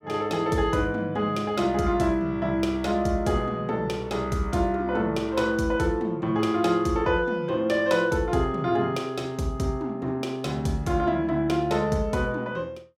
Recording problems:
none

